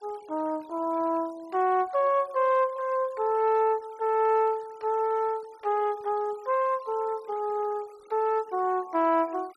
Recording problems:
denoising artefacts; signal-to-artefact ratio 27 dB

